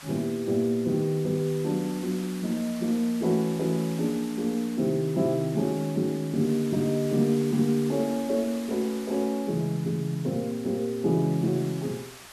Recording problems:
background hiss; SNR 17 dB

